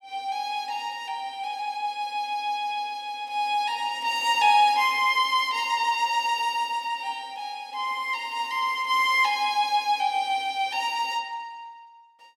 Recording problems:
none

